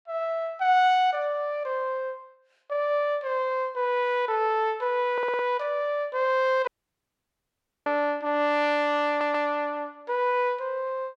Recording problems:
audio stuttering; at 5 s and at 9 s
audio cutting out; at 6.5 s for 1 s

